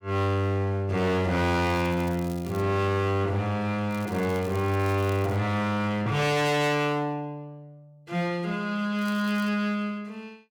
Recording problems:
distortion; hard clipping, signal-to-distortion ratio 7 dB
crackling; at 1.5 s, from 4 to 5.5 s and at 9 s; loose cable, SNR 22 dB

